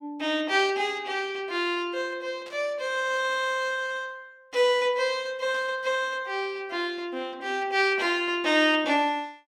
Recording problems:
static burst; at 2.5 s, at 5.5 s and at 8 s; peak -14 dB vs average level

